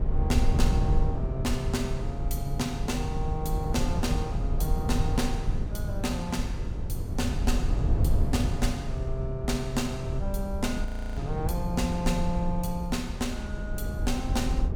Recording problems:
low-frequency rumble; below 96 Hz, SNR -1 dB
frozen audio; at 11 s

